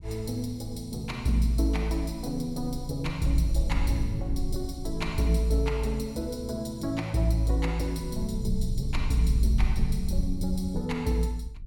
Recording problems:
rumble; below 72 Hz, SNR 6 dB

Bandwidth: 17 kHz